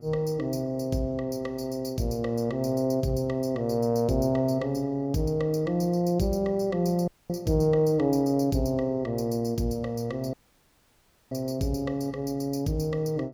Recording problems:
electrical hum; 60 Hz, harmonics up to 1.3 kHz, SNR 25 dB
audio cutting out; at 7 s and at 10 s for 1 s

